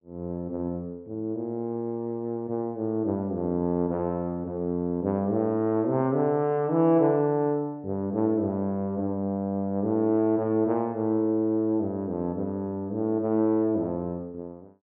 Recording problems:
treble missing; nothing above 3.3 kHz

